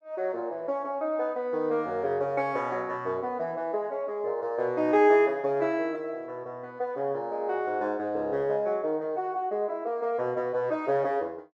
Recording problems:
none

